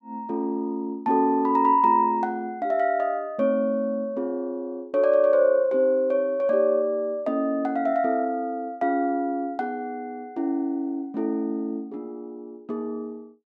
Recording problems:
none

